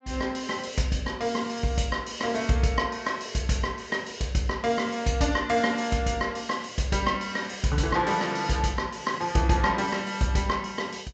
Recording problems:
treble cut off; nothing above 8 kHz

